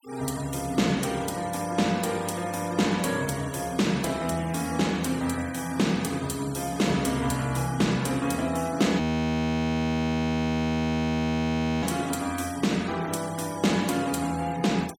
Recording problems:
noise reduction artefacts; signal-to-artefact ratio 18 dB
frozen audio; at 9 s for 3 s

